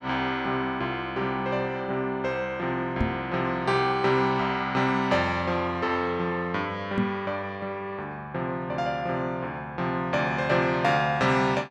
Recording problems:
microphone thump; at 3 s and at 7 s; peak +3 dB vs average level

